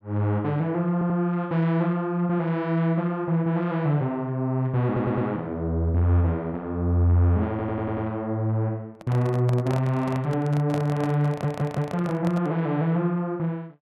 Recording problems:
audio stuttering; 4 times, first at 1 s
handling noise; from 9 to 13 s; peak -4 dB vs average level

